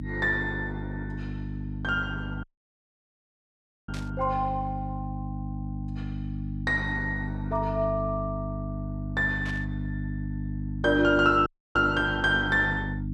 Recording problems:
hum; 50 Hz, harmonics up to 300 Hz, SNR 7 dB
audio cutting out; at 2.5 s for 1.5 s and at 11 s
burst of static; at 4 s and at 9.5 s; peak -11 dB vs average level

